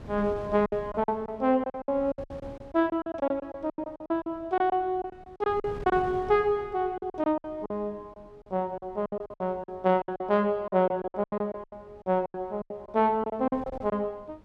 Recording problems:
wind noise; below 400 Hz, SNR 20 dB
lost packets; 17% of the sound replaced, filled with silence

